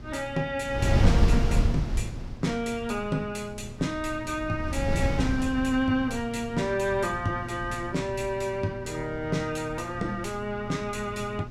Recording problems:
hum; 60 Hz, harmonics up to 600 Hz, SNR 14 dB
wind on the microphone; below 130 Hz, SNR 0 dB

